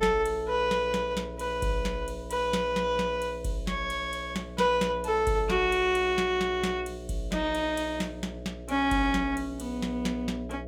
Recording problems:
electrical hum; 60 Hz, harmonics up to 660 Hz, SNR 12 dB

